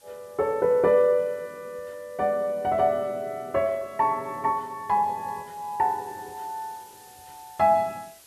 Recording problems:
hiss; slope 0 dB per octave, SNR 27 dB

